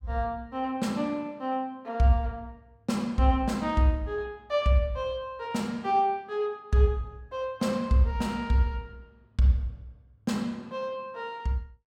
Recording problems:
none

